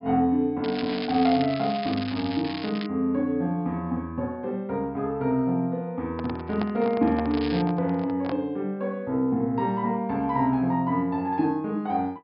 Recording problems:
low-pass filter; nothing above 5.5 kHz
crackling; from 0.5 to 3 s and at 7.5 s; loose cable, SNR 12 dB
microphone handling noise; from 6 to 8.5 s; peak -2 dB vs average level

